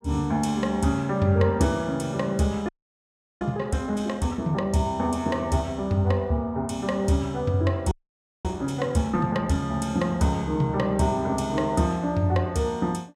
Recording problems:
frozen audio; at 2.5 s for 0.5 s and at 8 s for 0.5 s

